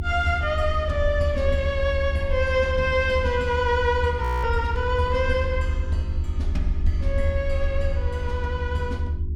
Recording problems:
hum; 50 Hz, harmonics up to 400 Hz, SNR 14 dB
rumble; below 78 Hz, SNR 3 dB
frozen audio; at 4 s

